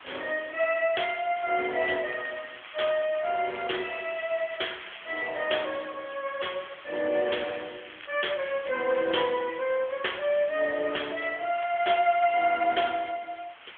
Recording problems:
telephone audio; 280 Hz to 3.4 kHz, AMR-NB
hiss; SNR 18 dB
crackle; from 1.5 to 5 s, from 7.5 to 9.5 s and from 12 to 13 s; loose cable, SNR 18 dB

